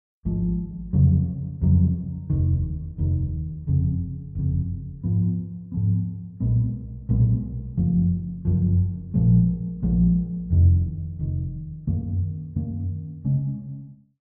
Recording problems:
none

